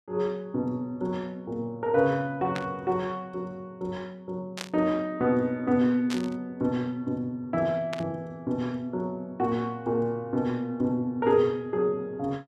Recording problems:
burst of static; 4 times, first at 2.5 s; peak -2 dB vs average level

